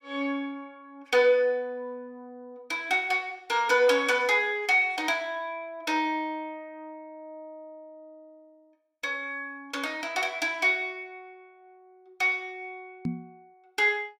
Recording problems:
microphone thump; at 13 s; peak -1 dB vs average level

